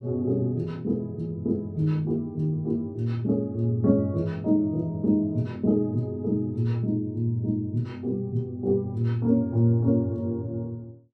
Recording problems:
none

